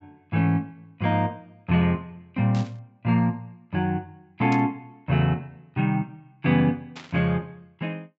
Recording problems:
low-pass filter; nothing above 7.8 kHz
burst of static; at 2.5 s, at 4.5 s and at 7 s; peak -10 dB vs average level

